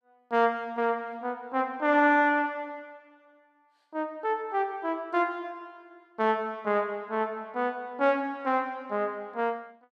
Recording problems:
none

